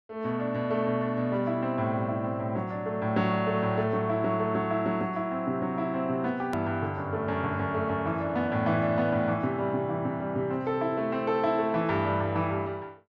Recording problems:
hard cut with a click; at 6.5 s

